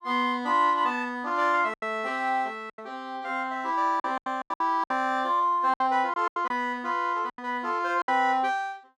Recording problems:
lost packets; 9% of the sound replaced, filled with silence

